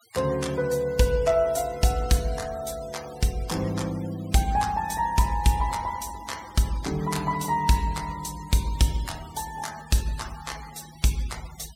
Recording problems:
denoising artefacts; signal-to-artefact ratio 18 dB

